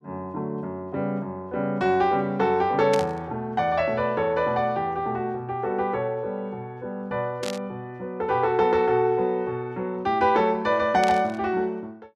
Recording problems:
static burst; at 3 s, at 7.5 s and at 11 s; peak -3 dB vs average level

